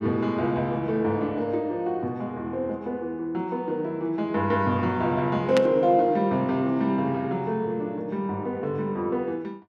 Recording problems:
static burst; at 5.5 s; peak +1 dB vs average level

